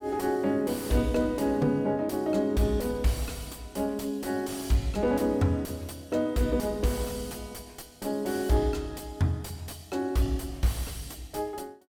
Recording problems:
distorted audio; soft clipping, signal-to-distortion ratio 6 dB

